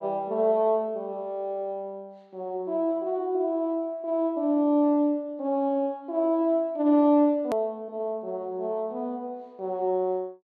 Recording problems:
hard cut with a click; at 7.5 s

